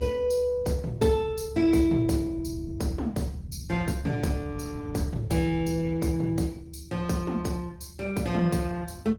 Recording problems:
lossy codec; Opus, log-spectral distance 3 dB, nothing above 17.4 kHz
low-frequency rumble; below 130 Hz, strongest tone 72 Hz, SNR 12 dB

